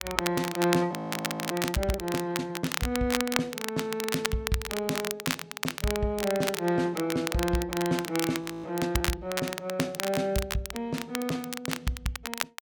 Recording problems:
crackling; vinyl, SNR 4 dB
audio freezing; at 1 s for 0.5 s and at 8.5 s

